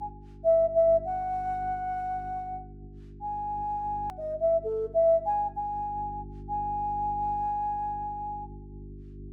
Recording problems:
mains hum; 50 Hz, harmonics up to 400 Hz, SNR 17 dB
edit click; at 4 s

